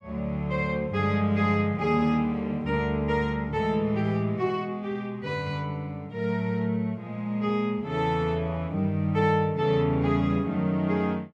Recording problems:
none

